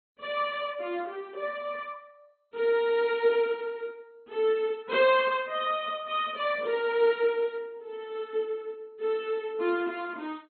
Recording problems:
lossy codec; MP2, log-spectral distance 2 dB, nothing above 4.1 kHz

